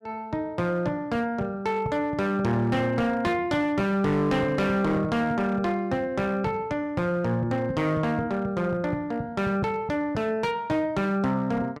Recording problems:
distortion; hard clipping, signal-to-distortion ratio 10 dB

